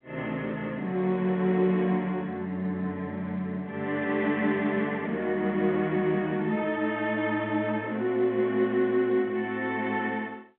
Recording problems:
phone line; 130 Hz to 3.5 kHz, G.711

